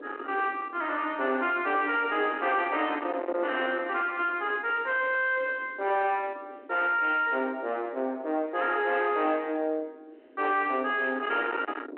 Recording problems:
phone line; 220 Hz to 3.1 kHz, G.726
distortion; soft clipping, signal-to-distortion ratio 6 dB
wind noise; below 1.6 kHz, SNR 14 dB

